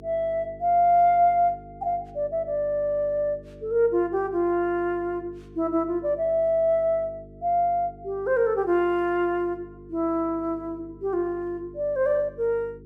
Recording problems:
hum; 50 Hz, harmonics up to 450 Hz, SNR 22 dB

